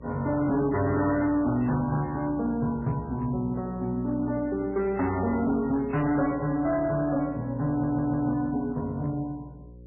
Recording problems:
lossy compression; MP3, log-spectral distance 2 dB, nothing above 2.7 kHz
distorted audio; hard clipping, uneven, signal-to-distortion ratio 12 dB
hum; 60 Hz, harmonics up to 540 Hz, SNR 19 dB
audio stuttering; at 7.5 s

